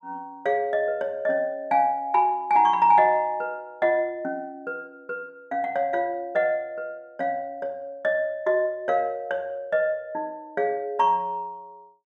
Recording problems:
none

